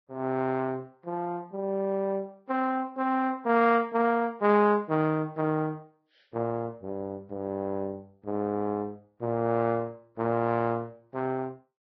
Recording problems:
codec artefacts; Vorbis, log-spectral distance 2 dB

